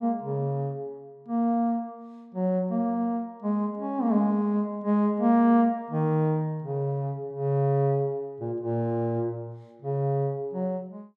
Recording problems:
none

